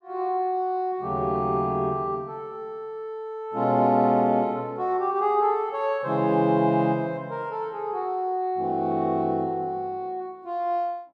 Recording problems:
none

